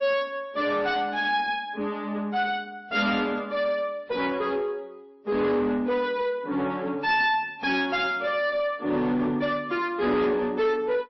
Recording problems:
codec artefacts; MP3, log-spectral distance 2 dB, nothing above 5.2 kHz
distortion; soft clipping, signal-to-distortion ratio 11 dB

